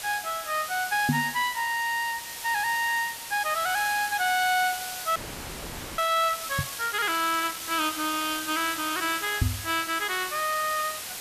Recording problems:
background hiss; slope +1 dB per octave, SNR 7 dB
microphone bump; at 1 s, at 6.5 s and at 9.5 s; peak +6 dB vs average level
audio freezing; at 5 s for 1 s

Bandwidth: 14.5 kHz